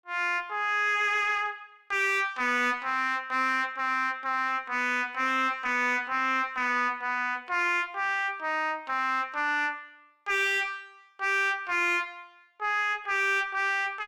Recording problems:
distortion; soft clipping, signal-to-distortion ratio 6 dB

